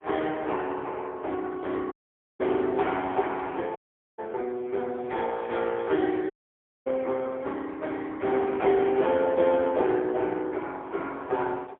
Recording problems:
phone line; 240 Hz to 3.6 kHz, AMR-NB, then MP3
dropout; at 2 s, at 4 s and at 6.5 s for 0.5 s

